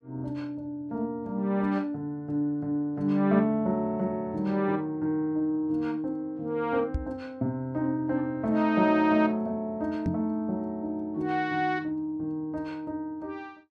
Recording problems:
knock on the microphone; at 7 s and at 10 s; peak +3 dB vs average level

